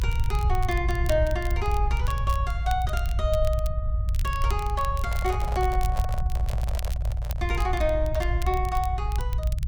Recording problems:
low-frequency rumble; below 72 Hz, SNR -1 dB
crackle; vinyl, SNR 15 dB
microphone handling noise; from 5 to 7.5 s; peak -2 dB vs average level

